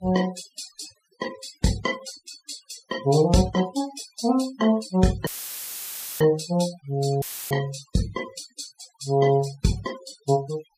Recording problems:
noise reduction artefacts; signal-to-artefact ratio 16 dB
audio cutting out; at 5.5 s for 1 s and at 7 s; filled with static

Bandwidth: 15 kHz